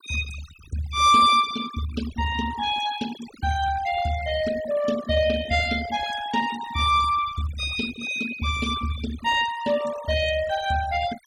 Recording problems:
denoising artefacts; signal-to-artefact ratio 14 dB

